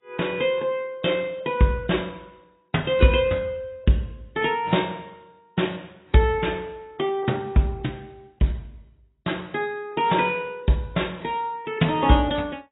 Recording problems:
codec artefacts; AAC, log-spectral distance 4 dB, nothing above 3.7 kHz

